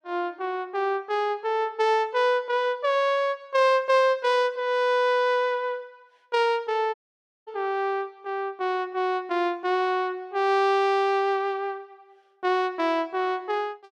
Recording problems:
audio cutting out; at 7 s for 0.5 s

